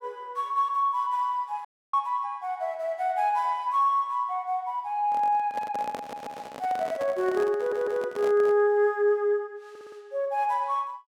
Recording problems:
audio cutting out; at 1.5 s
microphone handling noise; from 5 to 8.5 s; peak -7 dB vs average level
audio stuttering; at 6 s, at 7.5 s and at 9.5 s

